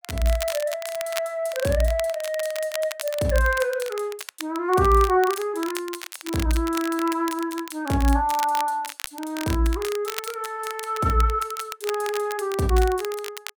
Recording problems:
crackle; vinyl, SNR 12 dB

